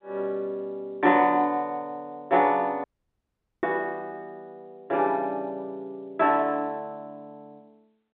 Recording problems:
phone line; 240 Hz to 3.7 kHz, G.711
audio cutting out; at 3 s for 1 s

